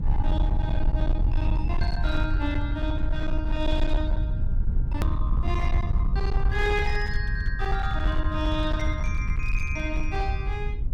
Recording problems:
distortion; hard clipping, uneven, signal-to-distortion ratio 12 dB
low-frequency rumble; below 74 Hz, SNR -4 dB
hard cut with a click; at 5 s

